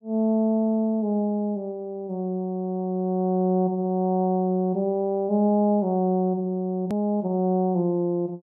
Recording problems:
hard cut with a click; at 7 s

